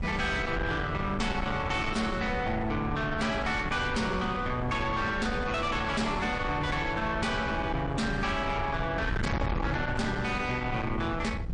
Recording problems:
lossy codec; MP3, log-spectral distance 2 dB, nothing above 9.2 kHz
distorted audio; soft clipping, signal-to-distortion ratio 7 dB
wind noise; below 450 Hz, SNR 6 dB

